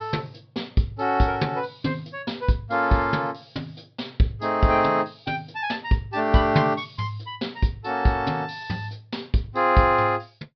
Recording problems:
treble missing; nothing above 5.5 kHz

